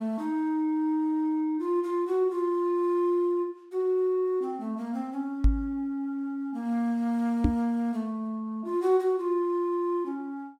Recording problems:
microphone bump; at 5.5 s and at 7.5 s; peak +8 dB vs average level

